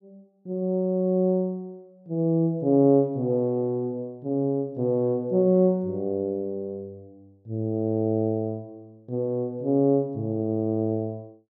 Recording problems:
none

